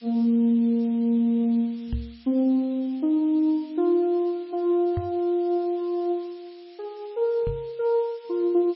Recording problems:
lossy compression; MP3, log-spectral distance 3 dB
hiss; SNR 29 dB
knock on the microphone; at 2 s, at 5 s and at 7.5 s; peak -2 dB vs average level

